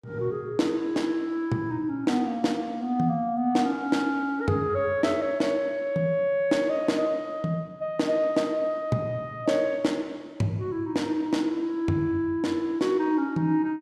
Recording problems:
none

